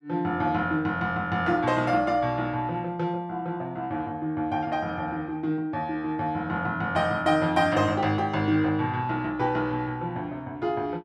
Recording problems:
none

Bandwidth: 12.5 kHz